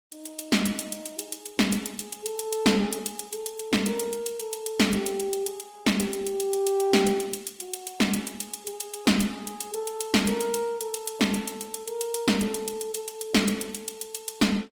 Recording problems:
lossy codec; Opus, log-spectral distance 5 dB, nothing above 19 kHz

